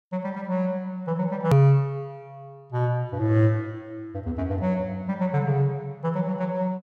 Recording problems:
click at an edit; at 1.5 s

